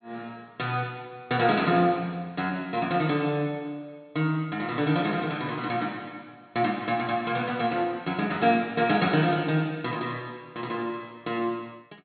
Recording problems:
treble missing; nothing above 4.4 kHz

